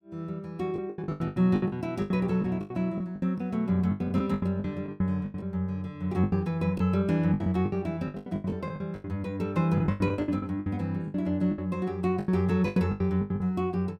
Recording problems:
lost packets; 18% of the sound replaced, filled with the last packet

